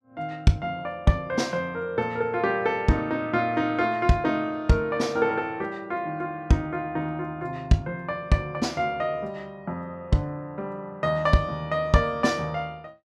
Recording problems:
none

